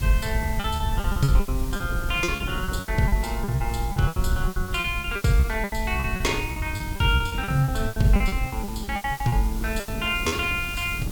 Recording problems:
hiss; slope -1 dB per octave, SNR 15 dB
low-frequency rumble; below 84 Hz, SNR 6 dB
wind on the microphone; below 210 Hz, SNR 12 dB
lost packets; 19% of the sound replaced, filled with repeated pitch periods

